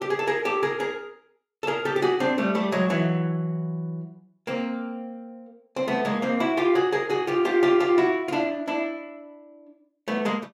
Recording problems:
none

